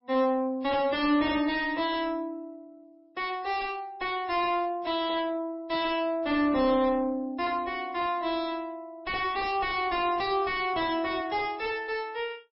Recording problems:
lossy compression; MP3, log-spectral distance 2 dB, nothing above 5.2 kHz
distorted audio; soft clipping, signal-to-distortion ratio 3 dB

